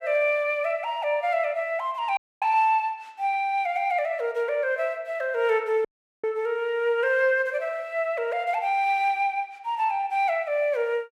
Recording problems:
dropout; at 2 s and at 6 s

